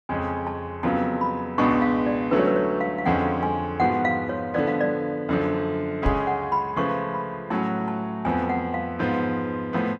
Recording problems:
microphone thump; at 6 s; peak +4 dB vs average level

